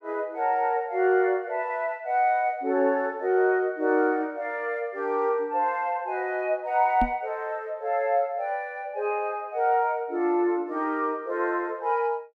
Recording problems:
microphone thump; at 7 s; peak +1 dB vs average level

